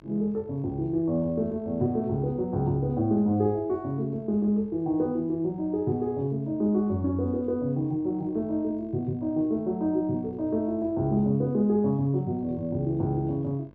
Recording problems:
hum; 50 Hz, harmonics up to 1.7 kHz, SNR 28 dB

